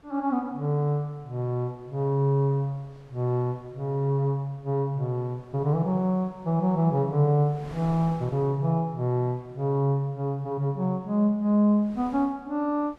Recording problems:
wind on the microphone; below 1 kHz, SNR 26 dB

